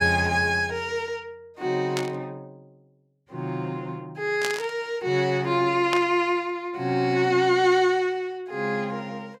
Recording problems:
static burst; at 2 s, at 4.5 s and at 6 s; peak +1 dB vs average level

